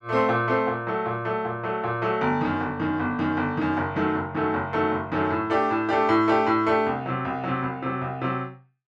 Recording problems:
none

